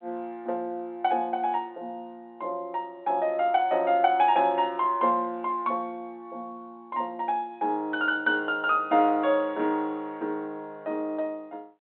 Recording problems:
phone line; 260 Hz to 3.5 kHz, G.726

